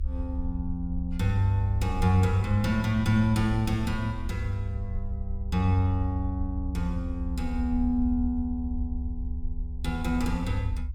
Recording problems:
low-frequency rumble; below 68 Hz, SNR 6 dB

